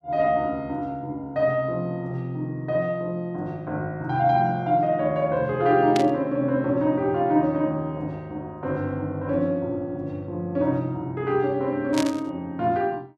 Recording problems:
burst of static; at 6 s and at 12 s; peak -1 dB vs average level

